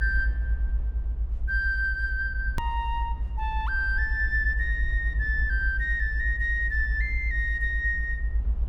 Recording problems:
rumble; below 60 Hz, strongest tone 50 Hz, SNR 2 dB
click at an edit; at 2.5 s

